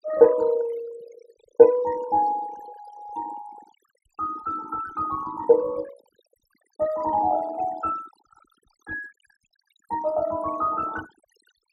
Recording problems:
denoising artefacts; signal-to-artefact ratio 19 dB

